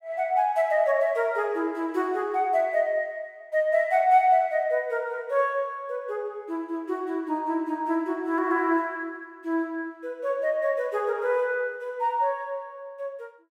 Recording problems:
none

